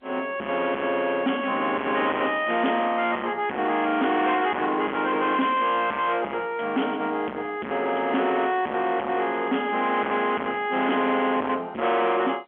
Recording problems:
phone line; 190 Hz to 3.4 kHz, G.711
distortion; soft clipping, signal-to-distortion ratio 6 dB

